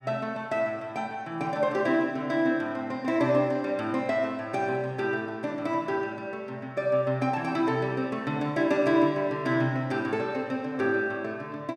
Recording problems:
none

